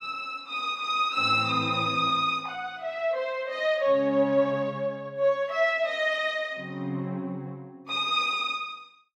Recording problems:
none

